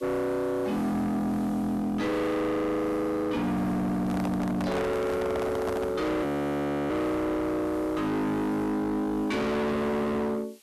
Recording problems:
distortion; hard clipping, uneven, signal-to-distortion ratio 5 dB
hiss; slope +1 dB per octave, SNR 27 dB
handling noise; from 4 to 6 s; peak 0 dB vs average level
audio freezing; at 6 s for 0.5 s

